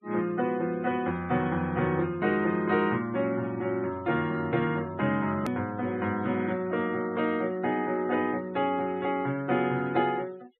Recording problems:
treble cut off; nothing above 4 kHz
denoising artefacts; signal-to-artefact ratio 25 dB
hard cut with a click; at 5.5 s

